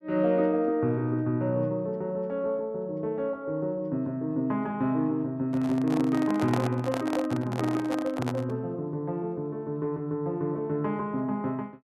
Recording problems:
microphone handling noise; from 5.5 to 8.5 s; peak +1 dB vs average level

